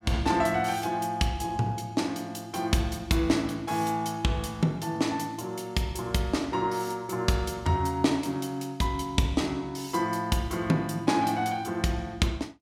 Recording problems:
none

